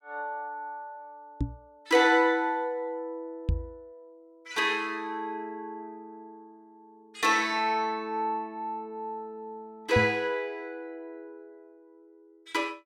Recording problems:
microphone thump; at 1.5 s, at 3.5 s and at 10 s; peak +5 dB vs average level

